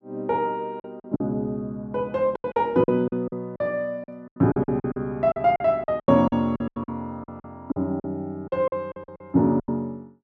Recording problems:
lost packets; 15% of the sound replaced, filled with silence

